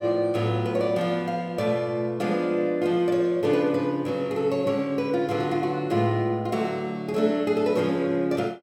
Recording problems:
none

